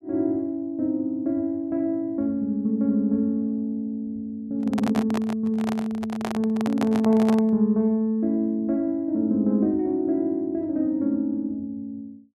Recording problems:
microphone handling noise; from 4.5 to 7.5 s; peak -1 dB vs average level

